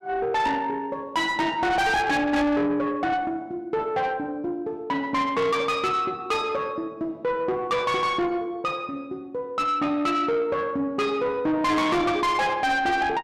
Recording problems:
distortion; soft clipping, signal-to-distortion ratio 8 dB

